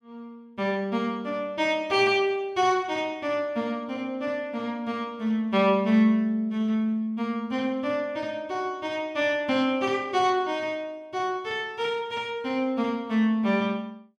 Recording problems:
none

